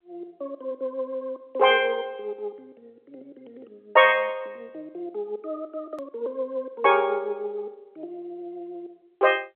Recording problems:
phone line; 320 Hz to 3.3 kHz, G.711
click at an edit; at 6 s

